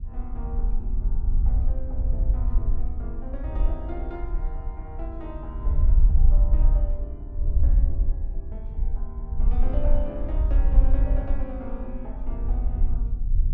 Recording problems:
wind on the microphone; below 52 Hz, SNR -13 dB

